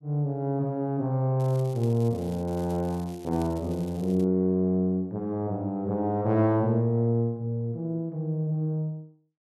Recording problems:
crackling; from 1.5 to 4 s; loose cable, SNR 25 dB

